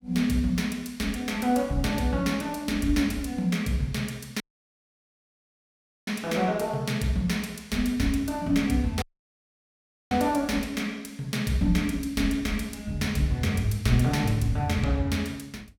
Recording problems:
audio cutting out; at 4.5 s for 1.5 s and at 9 s for 1 s

